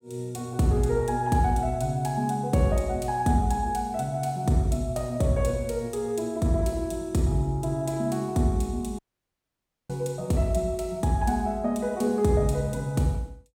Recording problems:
audio cutting out; at 9 s for 1 s

